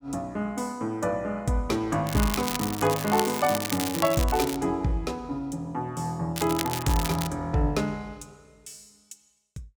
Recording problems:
crackling; from 2 to 4.5 s and at 6.5 s; loose cable, SNR 6 dB

